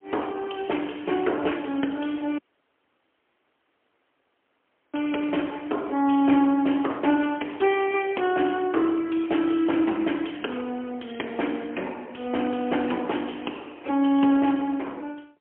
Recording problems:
phone line; 220 Hz to 3.3 kHz, AMR-NB, then MP3
audio cutting out; at 2.5 s for 2.5 s

